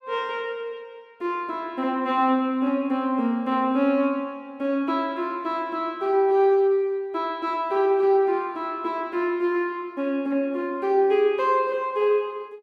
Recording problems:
none

